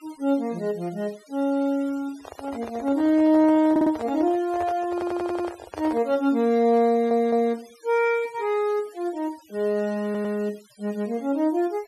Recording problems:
noise reduction artefacts; signal-to-artefact ratio 24 dB
microphone handling noise; from 2 to 6 s; peak -7 dB vs average level
audio stuttering; 4 times, first at 3.5 s

